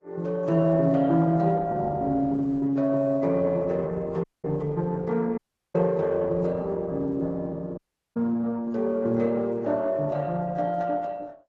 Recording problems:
codec artefacts; AAC, then Opus, log-spectral distance 2 dB, nothing above 7.3 kHz
dropout; at 4 s, at 5.5 s and at 8 s

